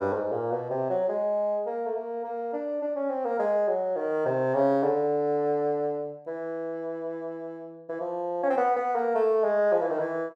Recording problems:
none

